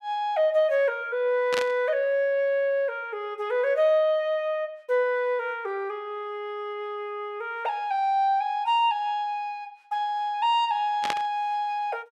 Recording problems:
burst of static; at 1.5 s and at 11 s; peak +1 dB vs average level

